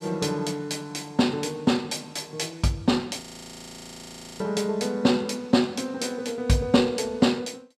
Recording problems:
audio freezing; at 3 s for 1 s

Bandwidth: 13 kHz